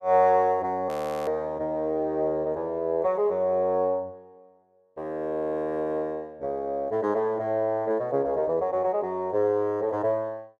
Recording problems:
frozen audio; at 1 s

